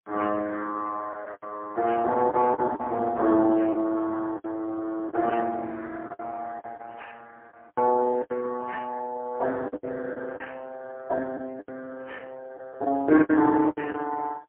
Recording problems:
phone line; 280 Hz to 3 kHz, AMR-NB, then MP3
lost packets; 9% of the sound replaced, filled with the last packet

